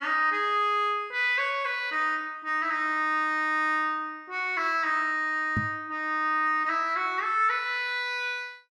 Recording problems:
microphone thump; at 5.5 s; peak +1 dB vs average level

